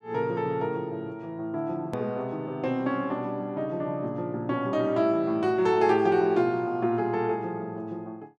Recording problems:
hard cut with a click; at 2 s

